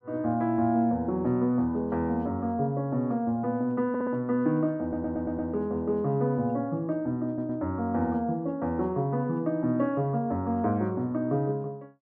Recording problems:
stutter; at 4 s, at 5 s and at 7.5 s

